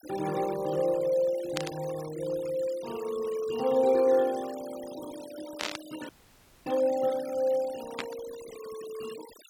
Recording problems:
noise reduction artefacts; signal-to-artefact ratio 17 dB
burst of static; at 1.5 s, at 5.5 s and at 8 s; peak +1 dB vs average level
audio cutting out; at 6 s for 0.5 s

